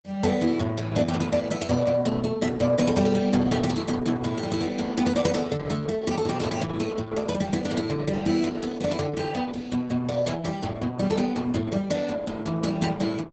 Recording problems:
codec artefacts; Opus, log-spectral distance 5 dB, nothing above 8 kHz

